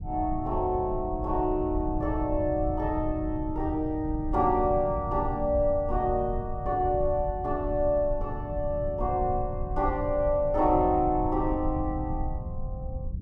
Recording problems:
low-frequency rumble; below 100 Hz, SNR 8 dB

